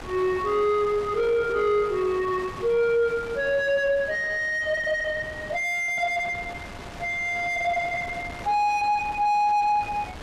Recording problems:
distortion; soft clipping, signal-to-distortion ratio 7 dB
wind on the microphone; below 1.8 kHz, SNR 16 dB

